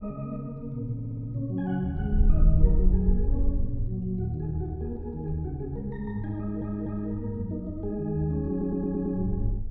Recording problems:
wind on the microphone; below 56 Hz, SNR -2 dB
audio stuttering; at 1 s, at 6.5 s and at 8.5 s

